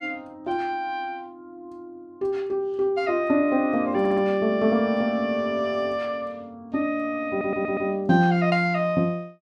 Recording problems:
stutter; at 4 s and at 7.5 s

